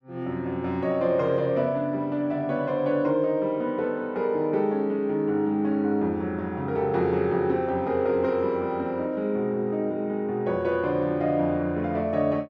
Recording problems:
none

